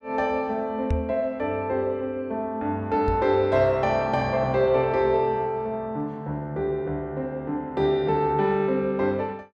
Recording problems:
knock on the microphone; at 1 s and at 3 s; peak +2 dB vs average level

